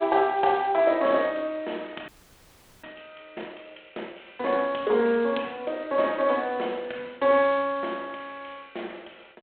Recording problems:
telephone audio; 280 Hz to 3.7 kHz, G.726
audio freezing; at 2 s for 1 s

